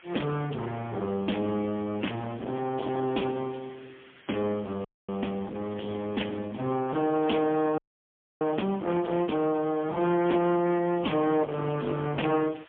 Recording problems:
telephone audio; 190 Hz to 3.4 kHz, AMR-NB, then MP3
distortion; hard clipping, uneven, signal-to-distortion ratio 10 dB
background hiss; SNR 24 dB
audio freezing; at 5 s and at 8 s for 0.5 s

